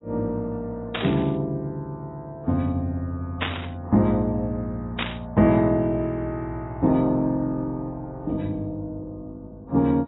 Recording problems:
codec artefacts; AAC, log-spectral distance 2 dB
burst of static; at 1 s, at 3.5 s and at 5 s; peak +3 dB vs average level

